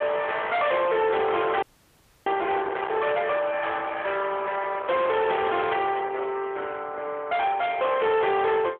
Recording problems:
phone line; 320 Hz to 3.6 kHz, AMR-NB
distorted audio; soft clipping, signal-to-distortion ratio 7 dB
wind on the microphone; below 1.7 kHz, SNR 12 dB
frozen audio; at 1.5 s for 0.5 s

